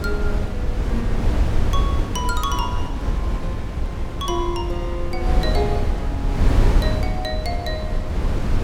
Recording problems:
wind on the microphone; below 100 Hz, SNR -5 dB

